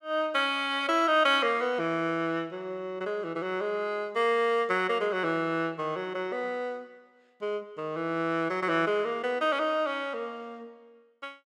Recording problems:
none

